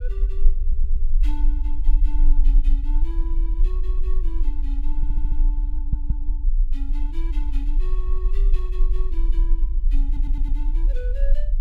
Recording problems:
low-frequency rumble; below 38 Hz, strongest tone 22 Hz, SNR -17 dB
audio stuttering; 4 times, first at 0.5 s

